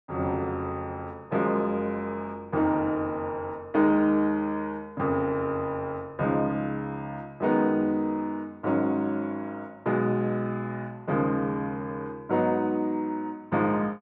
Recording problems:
none

